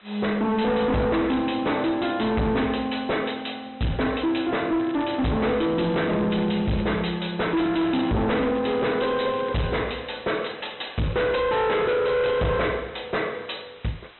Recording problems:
treble missing; nothing above 4 kHz
lossy codec; G.722, log-spectral distance 6 dB
distorted audio; hard clipping, signal-to-distortion ratio 7 dB
background hiss; SNR 25 dB
crackle; at 5 s, from 6 to 7 s and from 7.5 to 9.5 s; loose cable, SNR 21 dB

